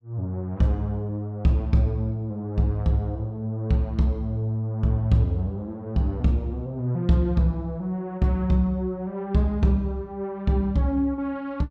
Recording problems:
none

